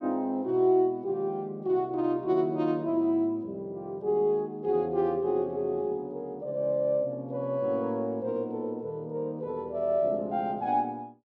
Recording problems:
none

